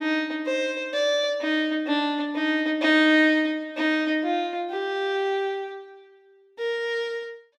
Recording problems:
none

